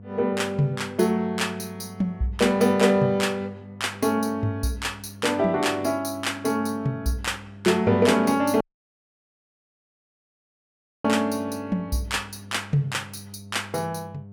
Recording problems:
mains hum; 50 Hz, harmonics up to 700 Hz, SNR 19 dB
dropout; at 8.5 s for 2.5 s

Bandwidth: 18 kHz